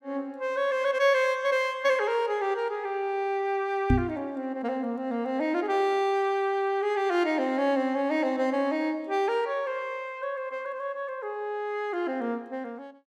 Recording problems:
knock on the microphone; at 4 s; peak +7 dB vs average level

